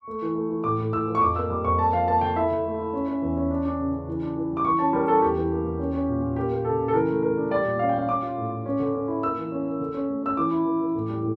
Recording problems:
none

